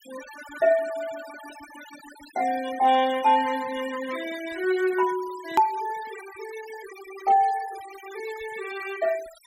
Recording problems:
denoising artefacts; signal-to-artefact ratio 18 dB
click at an edit; at 5.5 s

